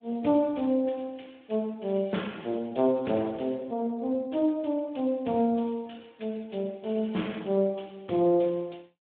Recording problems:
phone line; 150 Hz to 3.5 kHz, Speex

